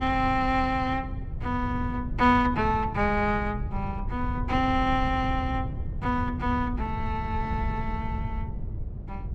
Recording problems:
wind on the microphone; below 120 Hz, SNR 6 dB

